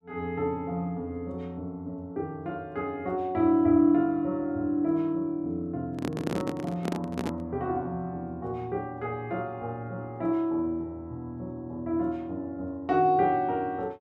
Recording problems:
microphone handling noise; from 6 to 7.5 s; peak +1 dB vs average level

